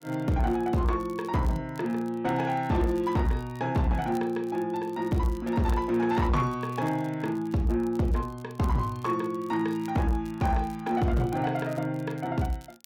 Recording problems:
distorted audio; soft clipping, signal-to-distortion ratio 11 dB
crackling; vinyl, SNR 27 dB

